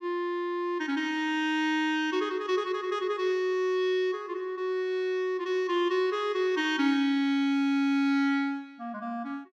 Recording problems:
none

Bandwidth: 14 kHz